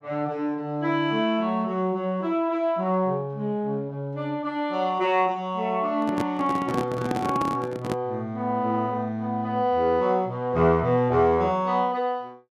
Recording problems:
microphone handling noise; from 6 to 8 s; peak +1 dB vs average level

